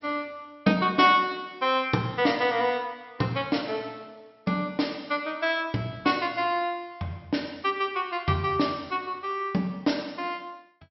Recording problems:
low-pass filter; nothing above 5.6 kHz

